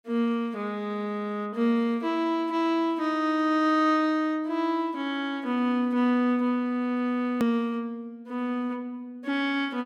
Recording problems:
hard cut with a click; at 7.5 s

